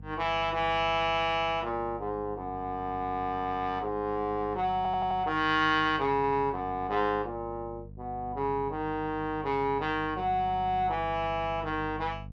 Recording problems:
mains hum; 50 Hz, harmonics up to 450 Hz, SNR 16 dB
stutter; at 5 s and at 6 s

